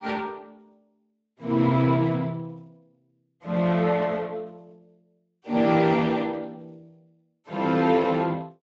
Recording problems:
lossy compression; Speex, log-spectral distance 3 dB

